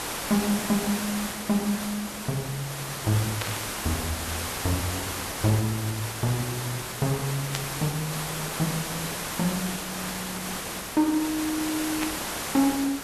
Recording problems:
hum; 50 Hz, harmonics up to 350 Hz, SNR 25 dB
hiss; slope -3 dB per octave, SNR 2 dB
burst of static; at 3.5 s, at 7.5 s and at 12 s; peak +2 dB vs average level

